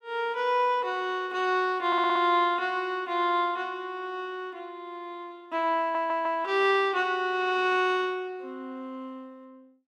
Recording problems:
audio stuttering; at 2 s and at 6 s

